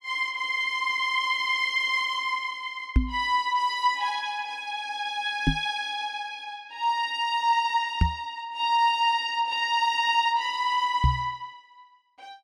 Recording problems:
microphone bump; 4 times, first at 3 s; peak +7 dB vs average level

